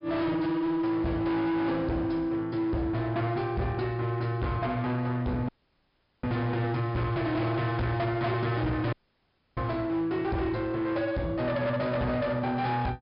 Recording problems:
treble cut off; nothing above 5.5 kHz
distorted audio; hard clipping, signal-to-distortion ratio 8 dB
audio cutting out; at 5.5 s for 0.5 s and at 9 s for 0.5 s

